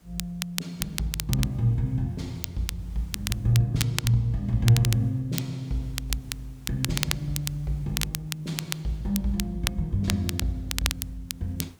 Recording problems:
background hiss; SNR 28 dB
crackling; vinyl, SNR 5 dB

